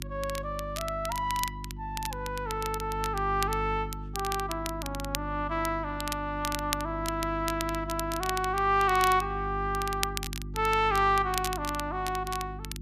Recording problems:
mains hum; 50 Hz, harmonics up to 350 Hz, SNR 10 dB
crackle; vinyl, SNR 9 dB

